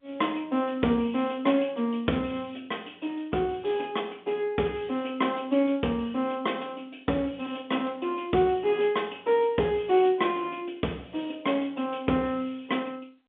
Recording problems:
phone line; 170 Hz to 3.7 kHz, G.711

